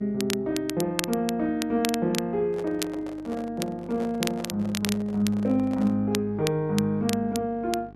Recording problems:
hum; 50 Hz, harmonics up to 1.3 kHz, SNR 22 dB
crackle; vinyl, SNR 9 dB
handling noise; from 2.5 to 6 s; peak -9 dB vs average level

